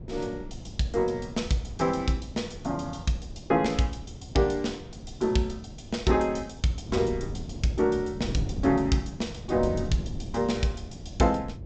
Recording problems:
low-pass filter; nothing above 8 kHz
wind on the microphone; below 210 Hz, SNR 11 dB

